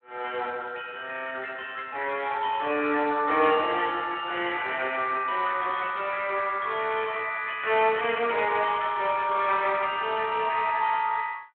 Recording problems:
phone line; 320 Hz to 3.6 kHz, Speex

